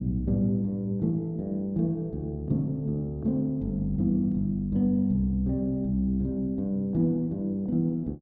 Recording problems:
none

